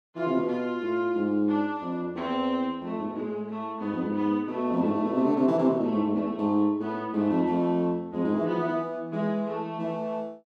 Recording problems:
none

